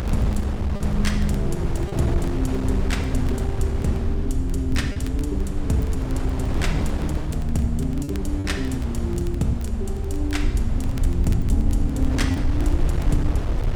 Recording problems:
rumble; below 72 Hz, SNR 0 dB
wind noise; below 290 Hz, SNR 3 dB
crackle; vinyl, SNR 22 dB
packet loss; 1.8% of the sound replaced, filled with repeated pitch periods

